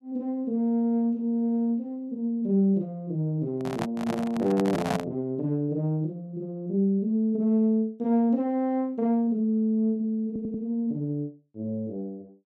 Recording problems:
microphone handling noise; from 3.5 to 5 s; peak +3 dB vs average level
stutter; at 10 s

